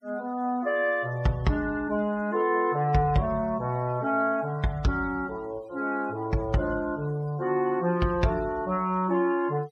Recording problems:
noise reduction artefacts; signal-to-artefact ratio 25 dB

